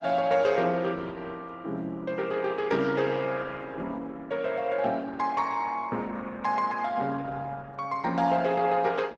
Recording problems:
codec artefacts; Opus, log-spectral distance 3 dB

